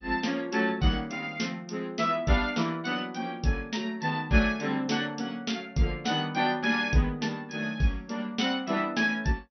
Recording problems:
lossy compression; MP2, log-spectral distance 3 dB, nothing above 6 kHz

